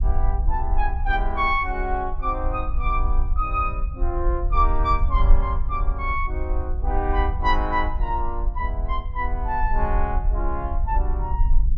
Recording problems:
rumble; below 50 Hz, strongest tone 24 Hz, SNR 0 dB

